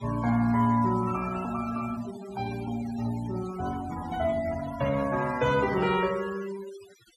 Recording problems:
noise reduction artefacts; signal-to-artefact ratio 15 dB

